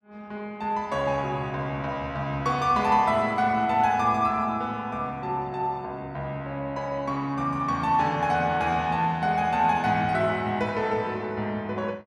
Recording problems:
none

